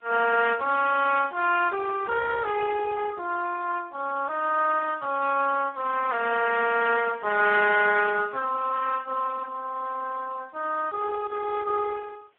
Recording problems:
telephone audio; 300 Hz to 2.5 kHz, Speex
hiss; SNR 40 dB

